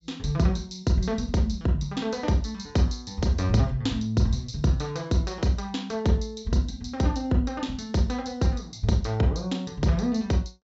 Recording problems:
low-pass filter; nothing above 8 kHz

